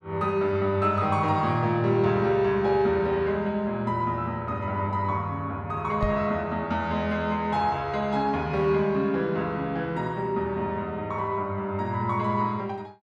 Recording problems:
knock on the microphone; at 6 s; peak 0 dB vs average level

